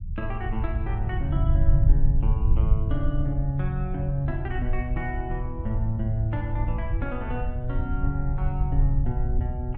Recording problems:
rumble; below 70 Hz, SNR -2 dB

